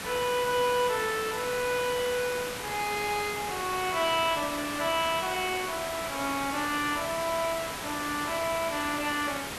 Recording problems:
background hiss; slope -2 dB per octave, SNR 6 dB

